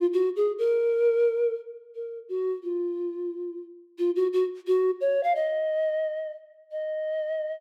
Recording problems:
none

